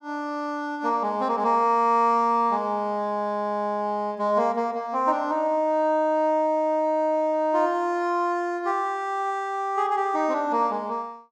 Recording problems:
none

